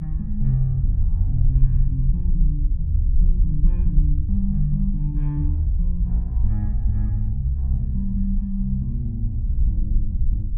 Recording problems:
rumble; below 54 Hz, strongest tone 32 Hz, SNR -1 dB

